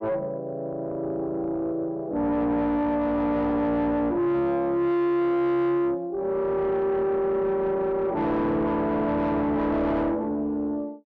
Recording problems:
distorted audio; soft clipping, signal-to-distortion ratio 6 dB

